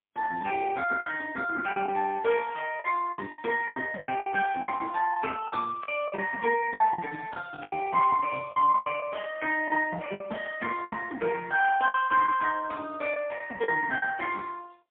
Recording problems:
phone line; 340 Hz to 2.7 kHz, AMR-NB, then MP3
packet loss; 10% of the sound replaced, filled with the last packet

